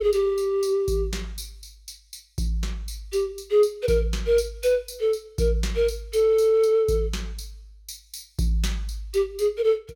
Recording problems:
none

